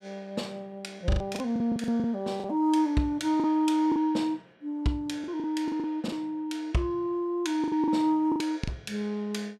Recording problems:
lost packets; 9% of the sound replaced, filled with the last packet

